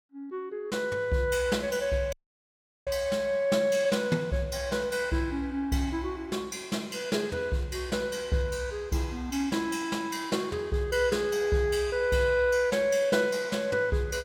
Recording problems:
dropout; at 2 s for 0.5 s

